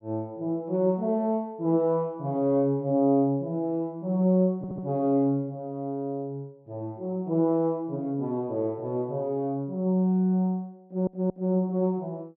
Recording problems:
audio stuttering; at 4.5 s and at 11 s

